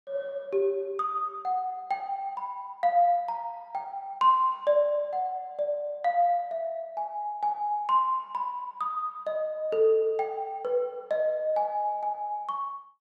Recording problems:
none

